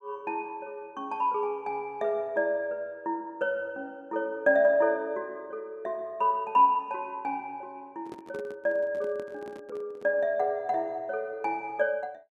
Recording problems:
handling noise; from 8 to 10 s; peak -10 dB vs average level

